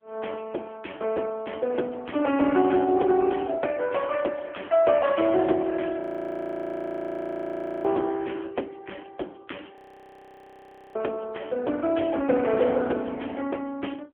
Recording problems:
telephone audio; 240 Hz to 3.3 kHz, AMR-NB
frozen audio; at 6 s for 2 s and at 10 s for 1 s

